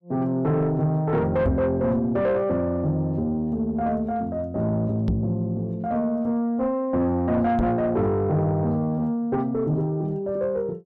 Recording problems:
distortion; soft clipping, signal-to-distortion ratio 11 dB
microphone thump; at 1.5 s, at 5 s and at 7.5 s; peak +2 dB vs average level

